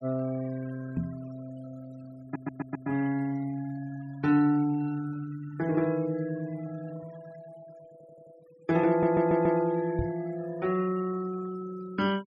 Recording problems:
noise reduction artefacts; signal-to-artefact ratio 21 dB
microphone thump; at 1 s and at 10 s; peak +2 dB vs average level
stutter; at 2 s, at 8 s and at 9 s

